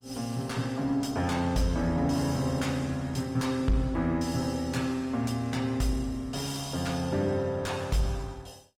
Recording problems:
lossy compression; Opus, log-spectral distance 3 dB, nothing above 18.3 kHz
distorted audio; soft clipping, signal-to-distortion ratio 11 dB

